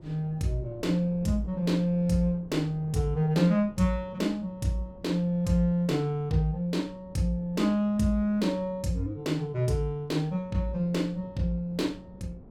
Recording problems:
wind on the microphone; below 290 Hz, SNR 22 dB

